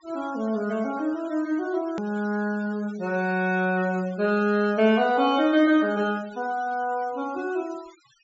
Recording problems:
low-pass filter; nothing above 8 kHz
noise reduction artefacts; signal-to-artefact ratio 23 dB
edit click; at 2 s

